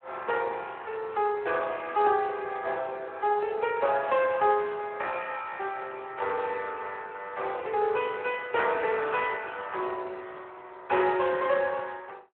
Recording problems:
telephone audio; 320 Hz to 3.2 kHz, Speex

